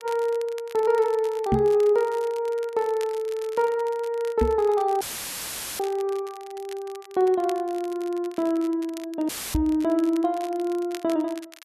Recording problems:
crackling; vinyl, SNR 22 dB
knock on the microphone; at 1.5 s, at 4.5 s and at 9.5 s; peak +5 dB vs average level
dropout; at 5 s for 1 s and at 9.5 s; filled with static

